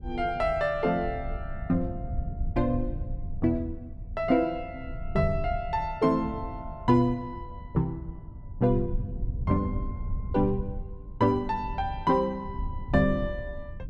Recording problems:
low-frequency rumble; below 92 Hz, SNR 10 dB

